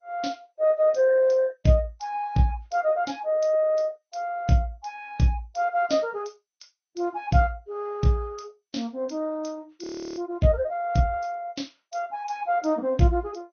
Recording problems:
lossy codec; Vorbis, then MP2, log-spectral distance 3 dB, nothing above 6.3 kHz
frozen audio; at 10 s

